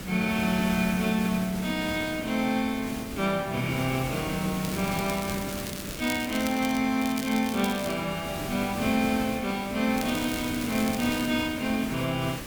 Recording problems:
hiss; SNR 9 dB
crackling; from 4.5 to 7 s, at 7 s and from 10 to 11 s; loose cable, SNR 12 dB

